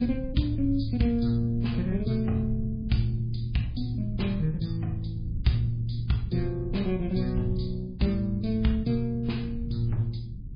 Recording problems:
lossy codec; MP3, log-spectral distance 2 dB, nothing above 11.3 kHz
rumble; below 110 Hz, SNR 9 dB

